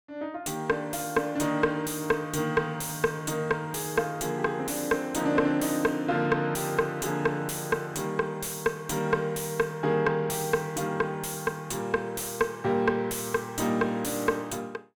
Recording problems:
distorted audio; soft clipping, signal-to-distortion ratio 10 dB

